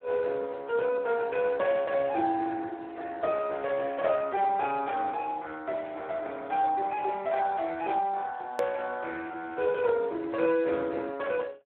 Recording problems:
phone line; 280 Hz to 2.8 kHz, Speex
edit click; at 8.5 s

